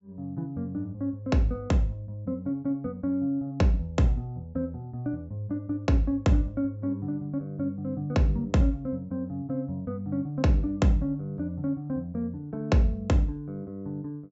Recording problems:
treble missing; nothing above 8 kHz

